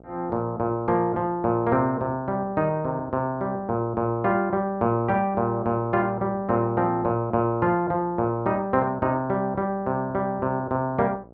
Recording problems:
electrical hum; 60 Hz, harmonics up to 1.3 kHz, SNR 25 dB

